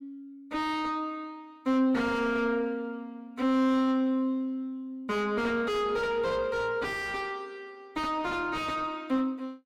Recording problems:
distorted audio; soft clipping, signal-to-distortion ratio 5 dB

